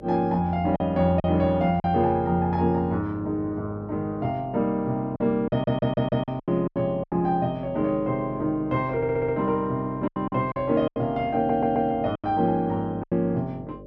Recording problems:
hum; 50 Hz, harmonics up to 600 Hz, SNR 19 dB
lost packets; 7% of the sound replaced, filled with silence
audio stuttering; at 5.5 s, at 9 s and at 11 s

